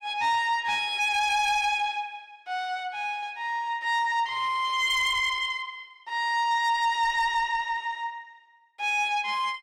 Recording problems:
distortion; soft clipping, signal-to-distortion ratio 12 dB

